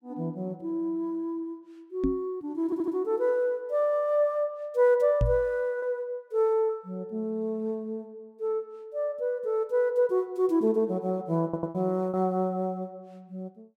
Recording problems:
lost packets; 1.1% of the sound replaced, filled with repeated pitch periods
microphone thump; at 2 s and at 5 s; peak +5 dB vs average level
audio stuttering; at 2.5 s and at 11 s

